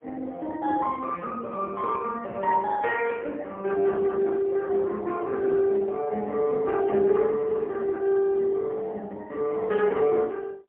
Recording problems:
phone line; 220 Hz to 3.4 kHz, AMR-NB, then MP3

